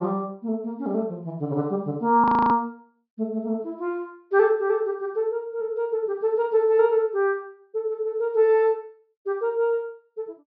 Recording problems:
treble cut off; nothing above 5.5 kHz
frozen audio; at 2 s

